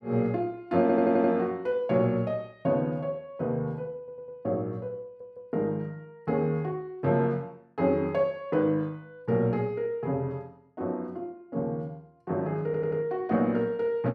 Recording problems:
stutter; 4 times, first at 1 s

